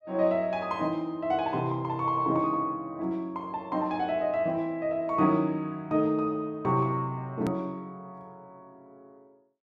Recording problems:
edit click; at 7.5 s

